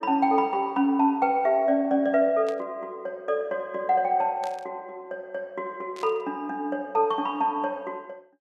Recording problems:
static burst; at 2.5 s, at 4.5 s and at 6 s; peak -13 dB vs average level

